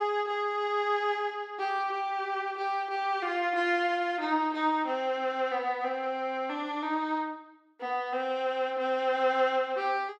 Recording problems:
none

